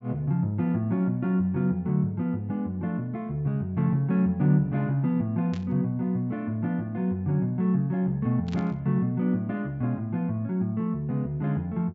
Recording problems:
treble cut off; nothing above 8 kHz
burst of static; at 5.5 s and at 8.5 s; peak -13 dB vs average level

